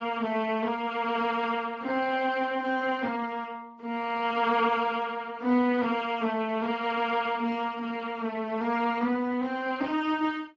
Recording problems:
lossy compression; AAC, then Speex, log-spectral distance 3 dB, nothing above 7.3 kHz

